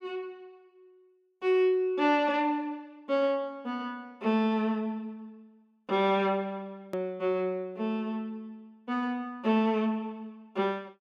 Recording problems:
edit click; at 7 s

